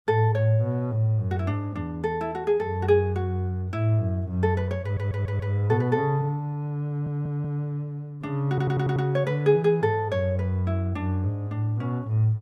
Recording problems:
stutter; at 5 s, at 7 s and at 8.5 s

